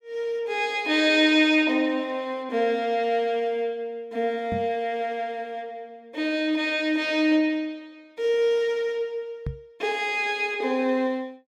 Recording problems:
microphone bump; at 4.5 s and at 9.5 s; peak -3 dB vs average level

